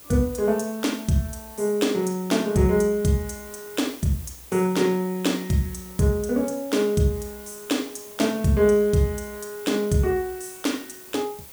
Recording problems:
background hiss; slope -2 dB per octave, SNR 18 dB

